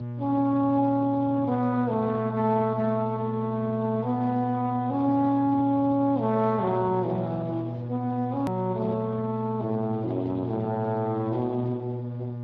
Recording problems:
lossy compression; Speex, log-spectral distance 2 dB, nothing above 13.1 kHz
hum; 60 Hz, harmonics up to 840 Hz, SNR 8 dB
hard cut with a click; at 8.5 s

